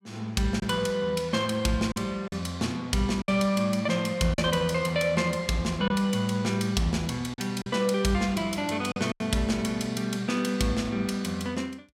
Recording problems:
packet loss; 4% of the sound replaced, filled with silence

